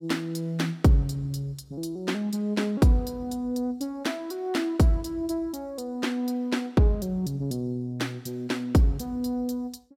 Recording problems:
none

